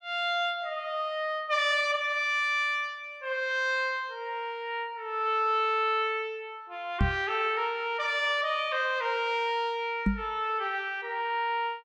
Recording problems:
knock on the microphone; at 7 s and at 10 s; peak +6 dB vs average level

